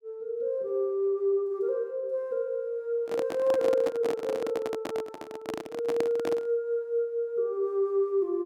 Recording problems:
microphone handling noise; from 3 to 6.5 s; peak 0 dB vs average level

